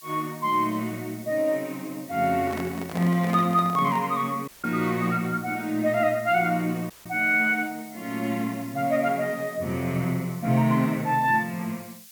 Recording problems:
background hiss; slope +6 dB per octave, SNR 20 dB
handling noise; from 2.5 to 4 s; peak -5 dB vs average level
audio cutting out; at 4.5 s and at 7 s

